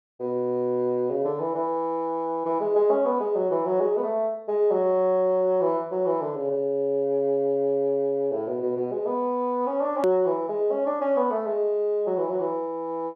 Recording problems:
click at an edit; at 10 s

